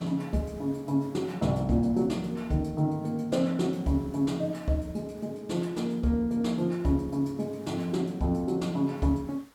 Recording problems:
hiss; SNR 29 dB

